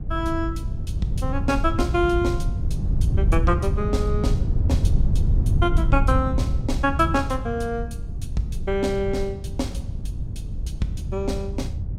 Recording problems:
wind on the microphone; below 110 Hz, SNR 0 dB

